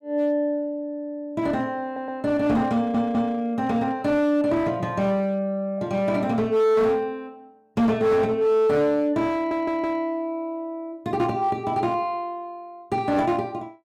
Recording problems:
distortion; hard clipping, uneven, signal-to-distortion ratio 11 dB
stutter; at 2 s, at 2.5 s and at 9.5 s

